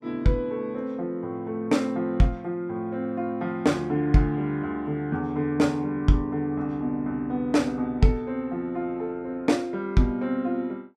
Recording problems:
none

